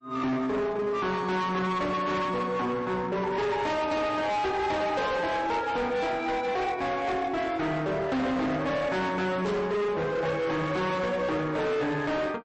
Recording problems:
codec artefacts; MP3, log-spectral distance 2 dB, nothing above 8.2 kHz
distortion; hard clipping, signal-to-distortion ratio 8 dB
burst of static; at 9.5 s; peak -12 dB vs average level

